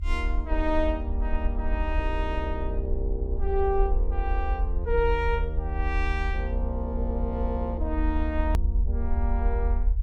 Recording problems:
low-frequency rumble; below 70 Hz, SNR -1 dB
hard cut with a click; at 8.5 s

